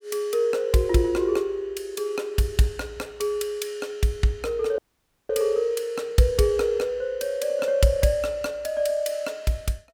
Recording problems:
audio cutting out; at 5 s for 0.5 s

